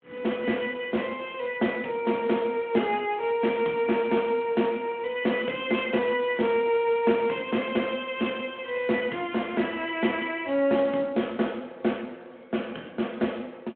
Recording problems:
telephone audio; 170 Hz to 3.4 kHz, Speex

